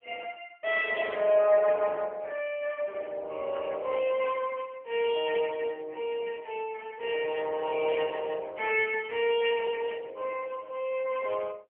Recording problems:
telephone audio; 340 Hz to 3.2 kHz, AMR-NB

